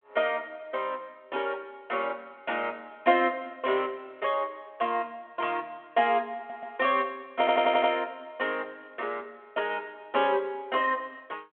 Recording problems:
phone line; 240 Hz to 3.5 kHz, G.726
audio stuttering; at 6.5 s and at 7.5 s

